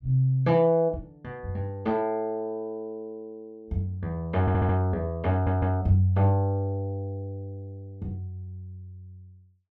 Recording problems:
stutter; at 4.5 s and at 5.5 s

